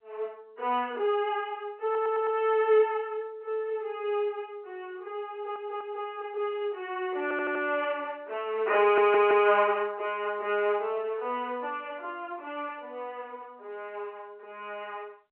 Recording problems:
phone line; 320 Hz to 3.2 kHz, G.711
stutter; 4 times, first at 2 s

